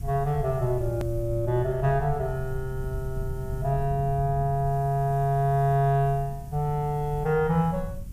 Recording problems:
background hiss; slope 0 dB per octave, SNR 28 dB
low-frequency rumble; below 100 Hz, SNR 11 dB
hard cut with a click; at 1 s

